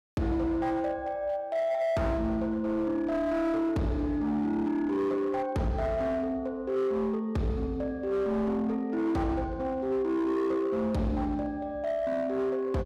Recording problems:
distorted audio; hard clipping, signal-to-distortion ratio 11 dB

